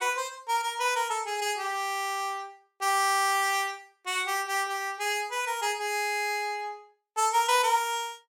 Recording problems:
none

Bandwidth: 16.5 kHz